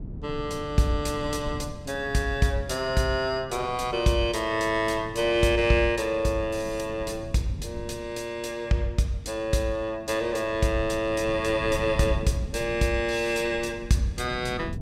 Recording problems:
wind on the microphone; below 180 Hz, SNR 14 dB

